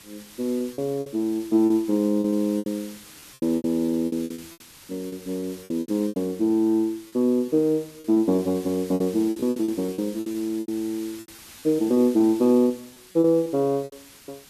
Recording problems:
hiss; SNR 21 dB
lost packets; 14% of the sound replaced, filled with repeated pitch periods

